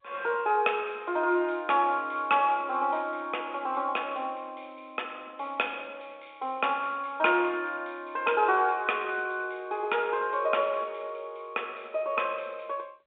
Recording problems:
telephone audio; 300 Hz to 3.6 kHz, G.711

